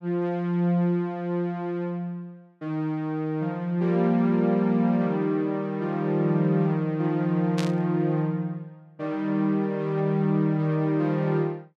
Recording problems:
static burst; at 7.5 s; peak -4 dB vs average level

